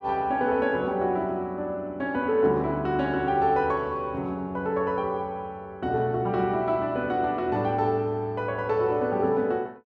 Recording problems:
none

